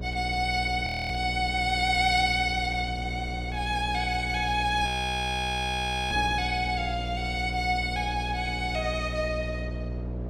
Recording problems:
electrical hum; 60 Hz, harmonics up to 660 Hz, SNR 8 dB
wind noise; below 630 Hz, SNR 18 dB
frozen audio; at 1 s and at 5 s for 1.5 s

